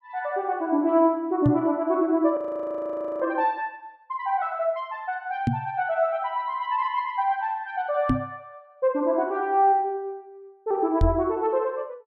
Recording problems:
knock on the microphone; 4 times, first at 1.5 s; peak +6 dB vs average level
frozen audio; at 2.5 s for 1 s

